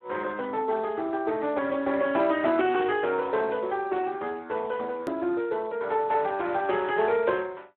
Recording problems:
phone line; 240 Hz to 3.8 kHz, Speex
hard cut with a click; at 5 s

